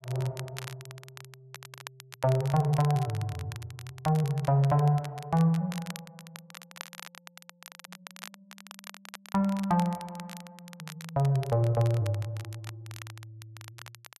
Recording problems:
crackle; vinyl, SNR 18 dB

